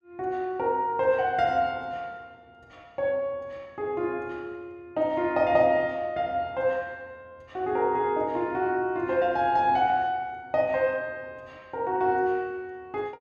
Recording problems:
none

